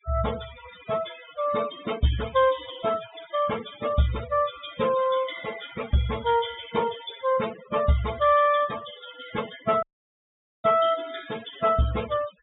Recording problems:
treble cut off; nothing above 4 kHz
noise reduction artefacts; signal-to-artefact ratio 13 dB
audio cutting out; at 10 s for 1 s

